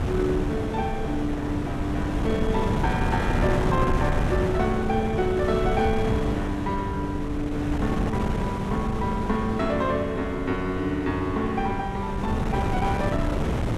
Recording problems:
wind noise; below 370 Hz, SNR 1 dB

